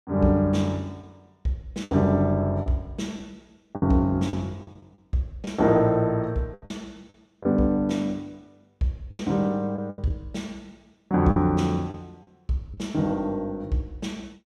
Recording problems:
lost packets; 7% of the sound replaced, filled with the last packet

